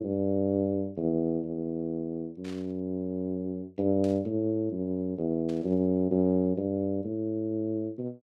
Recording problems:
static burst; at 2.5 s, at 4 s and at 5.5 s; peak -14 dB vs average level

